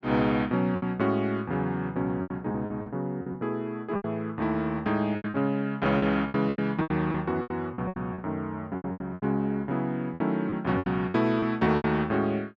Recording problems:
lost packets; 13% of the sound replaced, filled with repeated pitch periods

